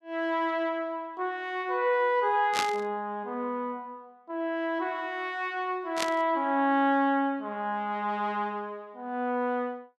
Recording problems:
burst of static; at 2.5 s and at 6 s; peak +4 dB vs average level

